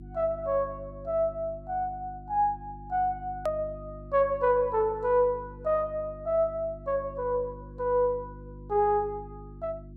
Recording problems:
hum; 50 Hz, harmonics up to 350 Hz, SNR 17 dB
click at an edit; at 3.5 s

